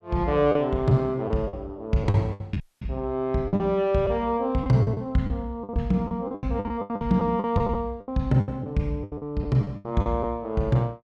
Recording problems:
packet loss; 14% of the sound replaced, filled with the last packet
audio cutting out; at 2.5 s

